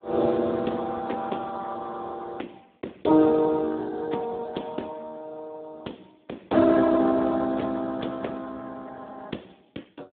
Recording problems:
telephone audio; 240 Hz to 3.8 kHz, Speex

